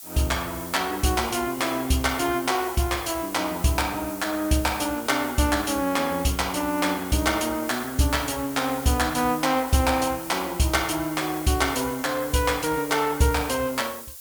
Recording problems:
background hiss; slope +4 dB per octave, SNR 13 dB

